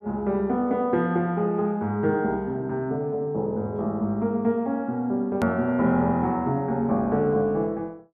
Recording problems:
hard cut with a click; at 5.5 s

